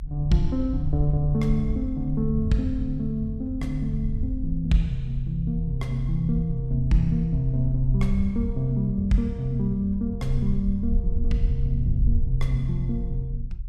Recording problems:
low-frequency rumble; below 64 Hz, SNR 5 dB

